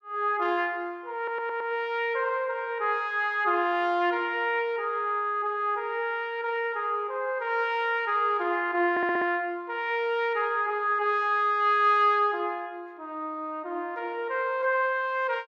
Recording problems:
audio stuttering; at 1 s and at 9 s

